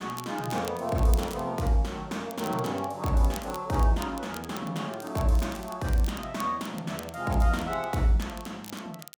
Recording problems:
crackle; vinyl, SNR 17 dB

